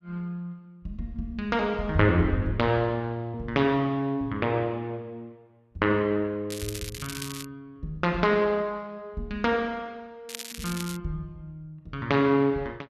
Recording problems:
crackle; at 6.5 s and at 10 s; loose cable, SNR 11 dB

